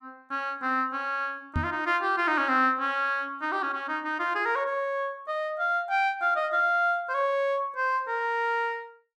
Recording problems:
knock on the microphone; at 1.5 s; peak +1 dB vs average level

